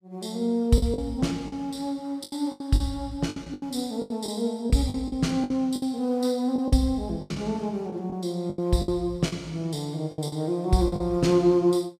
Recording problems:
lost packets; 11% of the sound replaced, filled with the last packet

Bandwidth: 15 kHz